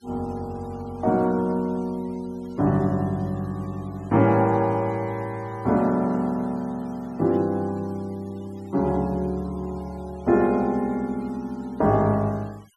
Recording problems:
denoising artefacts; signal-to-artefact ratio 28 dB

